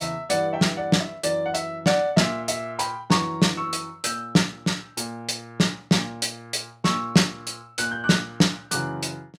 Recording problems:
none

